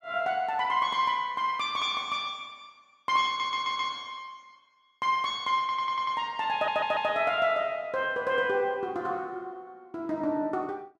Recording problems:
stutter; at 3.5 s, at 5.5 s and at 6.5 s

